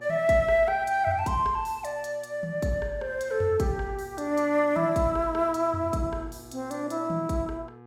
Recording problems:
electrical hum; 60 Hz, harmonics up to 2 kHz, SNR 24 dB

